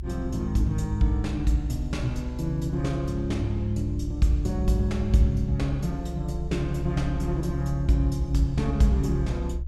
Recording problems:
low-frequency rumble; below 66 Hz, strongest tone 64 Hz, SNR 7 dB

